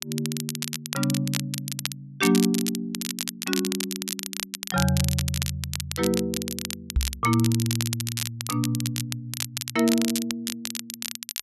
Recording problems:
crackling; vinyl, SNR 4 dB
microphone bump; at 7 s; peak +7 dB vs average level

